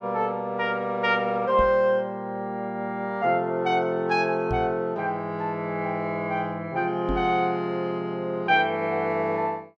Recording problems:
microphone thump; at 1.5 s, at 4.5 s and at 7 s; peak -1 dB vs average level

